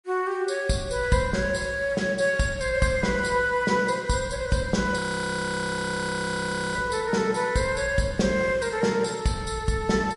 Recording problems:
lossy compression; MP3, log-spectral distance 3 dB, nothing above 10.7 kHz
audio freezing; at 5 s for 2 s

